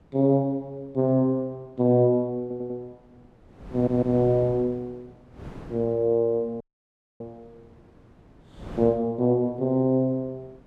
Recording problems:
wind on the microphone; below 480 Hz, SNR 20 dB
stutter; at 2.5 s and at 3.5 s
dropout; at 6.5 s for 0.5 s

